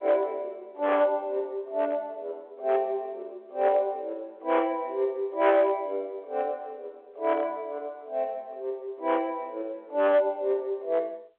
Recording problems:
phone line; 990 Hz to 2.3 kHz, G.711
distorted audio; hard clipping, signal-to-distortion ratio 13 dB

